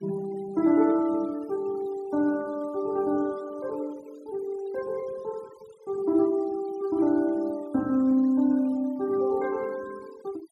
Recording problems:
noise reduction artefacts; signal-to-artefact ratio 23 dB

